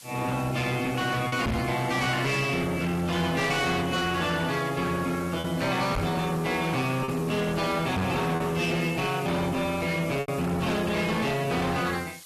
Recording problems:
lossy codec; AAC, log-spectral distance 6 dB, nothing above 13.1 kHz
distortion; hard clipping, uneven, signal-to-distortion ratio 7 dB
background hiss; slope +3 dB per octave, SNR 18 dB
lost packets; 2% of the sound replaced, filled with repeated pitch periods
microphone bump; at 1.5 s, at 6 s and at 8 s; peak +3 dB vs average level

